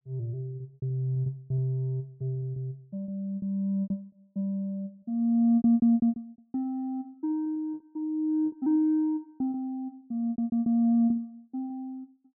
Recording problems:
packet loss; 14% of the sound replaced, filled with repeated pitch periods

